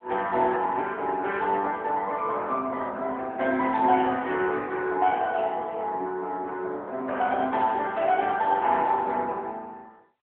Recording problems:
phone line; 280 Hz to 3.6 kHz, AMR-NB

